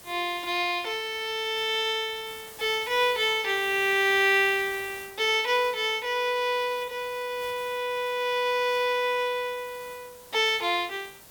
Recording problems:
background hiss; slope -2 dB per octave, SNR 20 dB

